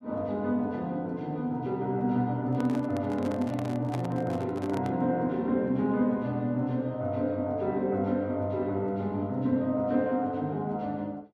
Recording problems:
microphone handling noise; from 2.5 to 5 s; peak -4 dB vs average level

